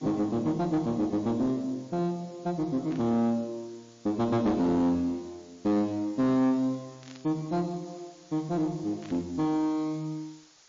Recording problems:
codec artefacts; MP3, log-spectral distance 7 dB
distorted audio; soft clipping, signal-to-distortion ratio 9 dB
hiss; slope +1 dB per octave, SNR 27 dB
static burst; at 3 s, at 7 s and at 9 s; peak -16 dB vs average level

